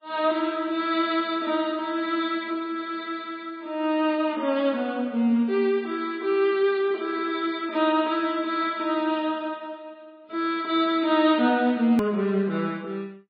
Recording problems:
lossy compression; MP3, log-spectral distance 2 dB, nothing above 20.1 kHz
edit click; at 12 s

